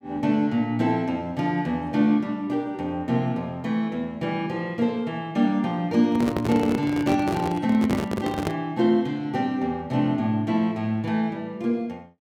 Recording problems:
microphone handling noise; from 6 to 8.5 s; peak +2 dB vs average level

